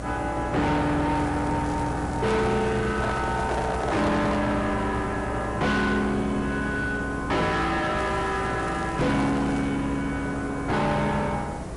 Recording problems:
lossy compression; MP3, log-spectral distance 3 dB, nothing above 11 kHz
distortion; soft clipping, signal-to-distortion ratio 6 dB
electrical hum; 60 Hz, harmonics up to 660 Hz, SNR 11 dB
hiss; slope -8 dB per octave, SNR 10 dB
crackle; from 1 to 4 s and from 8 to 9.5 s; loose cable, SNR 23 dB
handling noise; from 3 to 4.5 s; peak +2 dB vs average level

